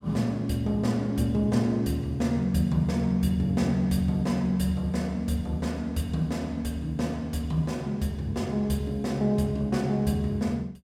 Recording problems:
none

